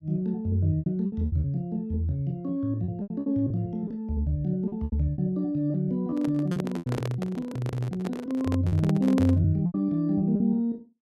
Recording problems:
packet loss; 10% of the sound replaced, filled with repeated pitch periods
handling noise; from 6 to 9.5 s; peak 0 dB vs average level

